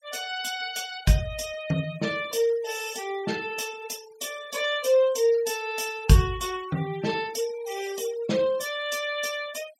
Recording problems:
noise reduction artefacts; signal-to-artefact ratio 17 dB

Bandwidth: 16.5 kHz